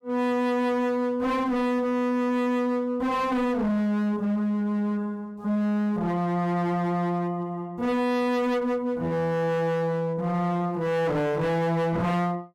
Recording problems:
distortion; hard clipping, signal-to-distortion ratio 6 dB

